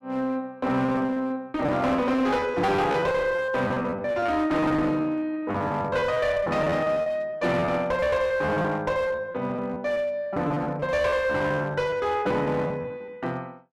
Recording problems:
distortion; hard clipping, uneven, signal-to-distortion ratio 9 dB
lost packets; 14% of the sound replaced, filled with repeated pitch periods

